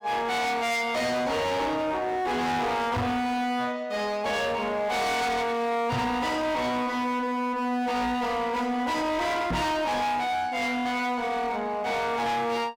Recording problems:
distortion; hard clipping, signal-to-distortion ratio 7 dB
microphone thump; at 3 s, at 6 s and at 9.5 s; peak +3 dB vs average level

